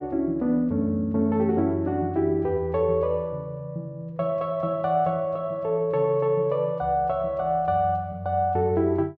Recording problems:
none

